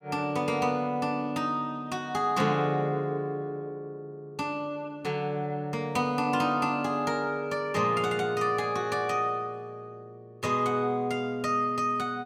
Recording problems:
none

